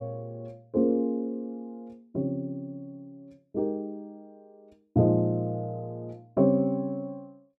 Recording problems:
none

